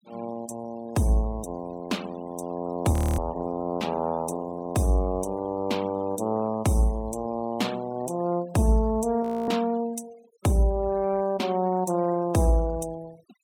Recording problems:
noise reduction artefacts; signal-to-artefact ratio 23 dB
frozen audio; at 3 s and at 9 s

